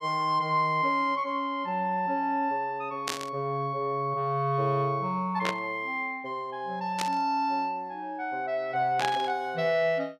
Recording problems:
burst of static; 4 times, first at 3 s; peak +2 dB vs average level

